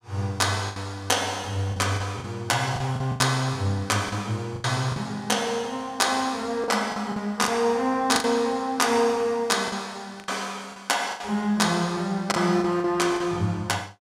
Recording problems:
packet loss; 8% of the sound replaced, filled with the last packet

